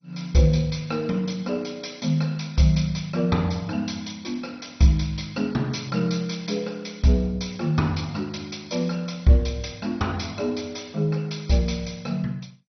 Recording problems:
lossy compression; MP2, log-spectral distance 6 dB, nothing above 6 kHz

